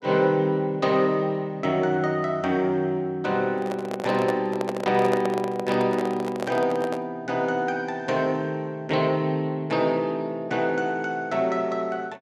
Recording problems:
microphone handling noise; from 3.5 to 7 s; peak 0 dB vs average level

